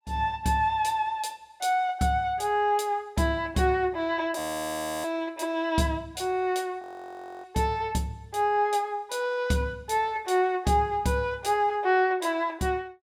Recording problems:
audio freezing; at 4.5 s for 0.5 s and at 7 s for 0.5 s

